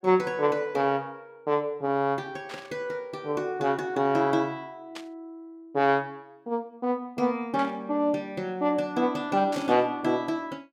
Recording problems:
static burst; 4 times, first at 2.5 s; peak -9 dB vs average level

